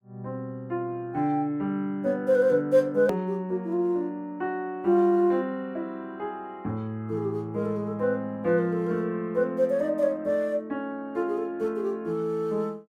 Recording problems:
edit click; at 3 s

